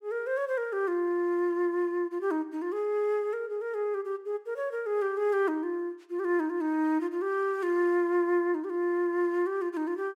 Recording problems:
none

